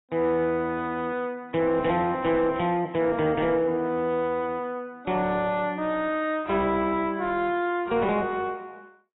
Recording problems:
codec artefacts; AAC, log-spectral distance 2 dB, nothing above 3.7 kHz
distorted audio; soft clipping, signal-to-distortion ratio 11 dB

